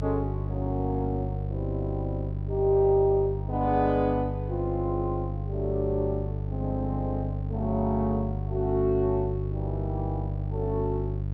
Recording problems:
hum; 50 Hz, harmonics up to 450 Hz, SNR 3 dB

